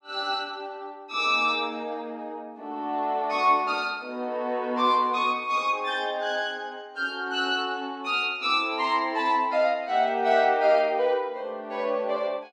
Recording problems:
none

